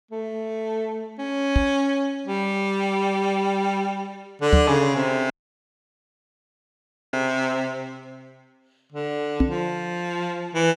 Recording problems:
microphone bump; at 1.5 s, at 4.5 s and at 9.5 s; peak +10 dB vs average level
audio cutting out; at 5.5 s for 2 s

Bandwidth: 15.5 kHz